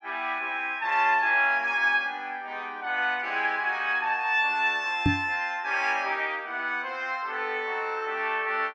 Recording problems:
microphone thump; at 5 s; peak +5 dB vs average level

